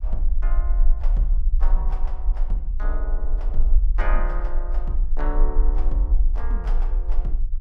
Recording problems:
rumble; below 40 Hz, strongest tone 20 Hz, SNR -12 dB

